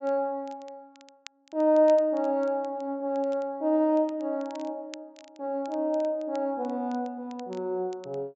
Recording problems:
treble cut off; nothing above 7.7 kHz
crackle; vinyl, SNR 27 dB

